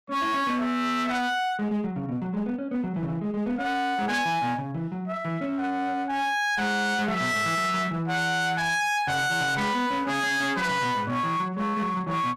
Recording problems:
distortion; hard clipping, uneven, signal-to-distortion ratio 5 dB

